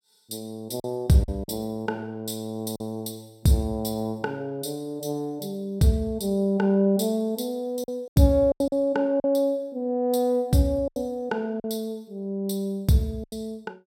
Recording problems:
lost packets; 5% of the sound replaced, filled with silence

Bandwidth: 16 kHz